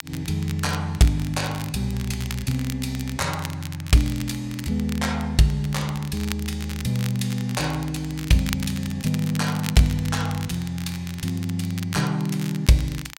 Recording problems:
crackle; vinyl, SNR 14 dB

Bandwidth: 16 kHz